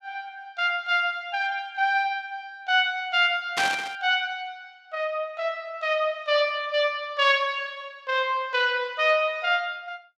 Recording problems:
burst of static; at 3.5 s; peak +1 dB vs average level

